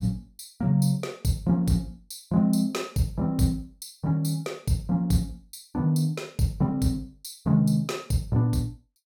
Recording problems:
none

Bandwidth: 17.5 kHz